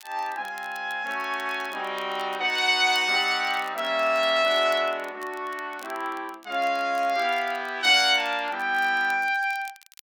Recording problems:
crackling; vinyl, SNR 25 dB

